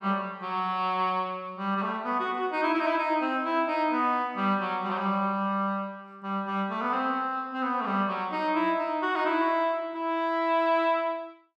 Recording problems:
none

